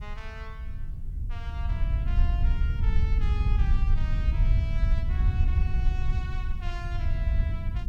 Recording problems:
background hiss; slope 0 dB per octave, SNR 28 dB
wind noise; below 74 Hz, SNR -15 dB

